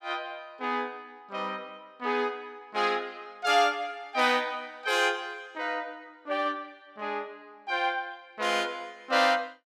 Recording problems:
none

